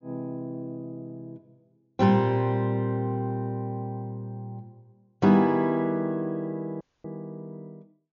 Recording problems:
low-pass filter; nothing above 7 kHz
audio cutting out; at 7 s

